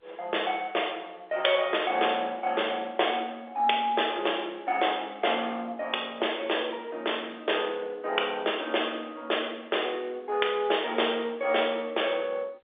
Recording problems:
telephone audio; 320 Hz to 3.6 kHz, G.711

